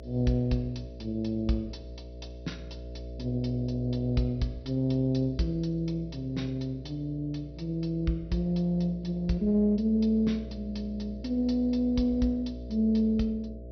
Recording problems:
treble cut off; nothing above 5.9 kHz
hum; 60 Hz, harmonics up to 660 Hz, SNR 13 dB

